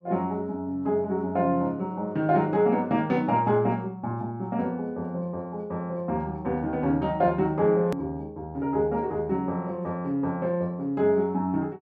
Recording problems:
edit click; at 8 s

